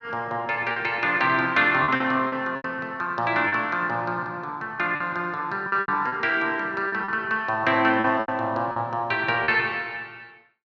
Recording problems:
lost packets; 7% of the sound replaced, filled with repeated pitch periods

